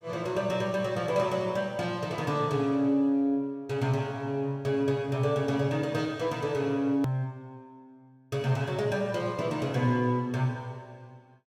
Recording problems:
click at an edit; at 7 s

